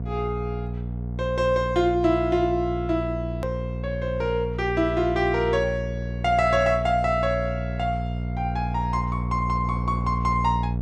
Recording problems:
mains hum; 60 Hz, harmonics up to 660 Hz, SNR 5 dB
click at an edit; at 3.5 s

